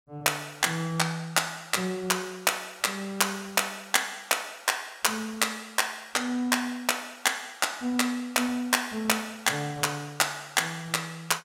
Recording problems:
none

